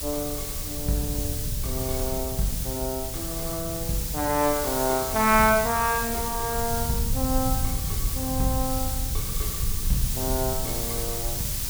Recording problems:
hum; 60 Hz, harmonics up to 540 Hz, SNR 20 dB
hiss; SNR 2 dB
rumble; below 100 Hz, SNR 6 dB

